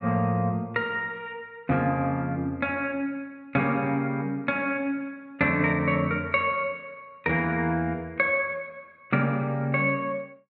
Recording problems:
none

